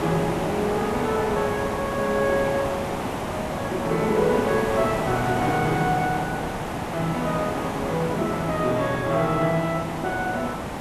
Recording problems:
background hiss; SNR 3 dB

